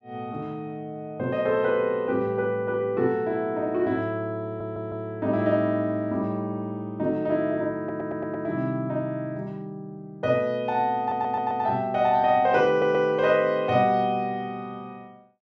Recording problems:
stutter; 4 times, first at 4.5 s

